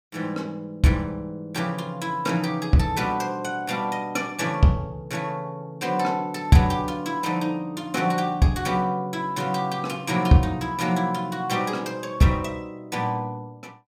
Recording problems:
none

